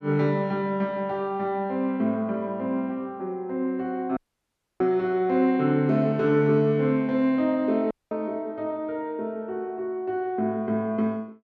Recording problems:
audio cutting out; at 4 s for 0.5 s and at 8 s

